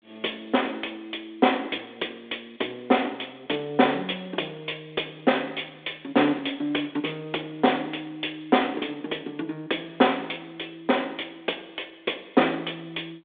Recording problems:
telephone audio; 260 Hz to 3.6 kHz, G.726

